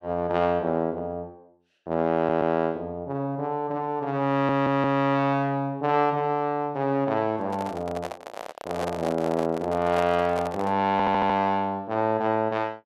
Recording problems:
stutter; at 2 s, at 4.5 s and at 11 s
microphone handling noise; from 7.5 to 11 s; peak -3 dB vs average level

